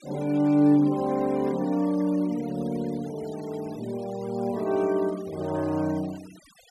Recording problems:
denoising artefacts; signal-to-artefact ratio 22 dB

